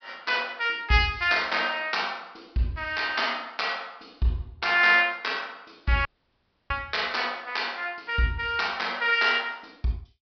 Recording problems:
treble missing; nothing above 5.5 kHz
dropout; at 6 s for 0.5 s

